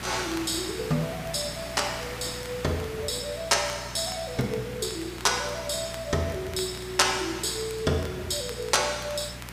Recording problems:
hum; 60 Hz, harmonics up to 420 Hz, SNR 16 dB
hiss; SNR 12 dB
crackling; vinyl, SNR 21 dB

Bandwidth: 15 kHz